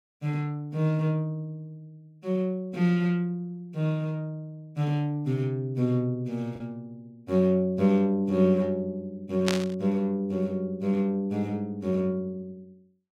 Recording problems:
lost packets; 0.3% of the sound replaced, filled with the last packet
static burst; at 9.5 s; peak +3 dB vs average level

